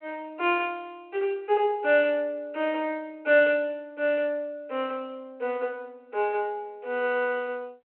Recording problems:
telephone audio; 340 Hz to 3.2 kHz, G.726

